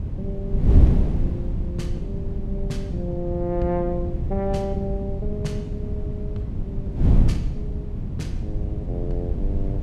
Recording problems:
wind noise; below 120 Hz, SNR -5 dB

